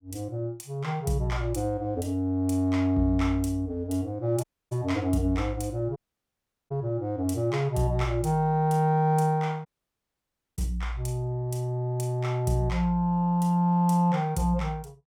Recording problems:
dropout; at 4.5 s, at 6 s for 0.5 s and at 9.5 s for 1 s

